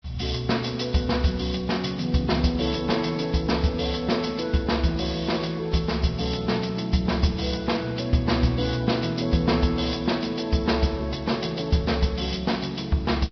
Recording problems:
lossy compression; Vorbis, log-spectral distance 7 dB, nothing above 5.7 kHz

